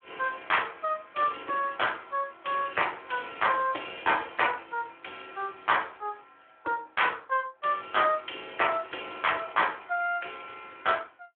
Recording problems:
telephone audio; 280 Hz to 3.4 kHz, Speex

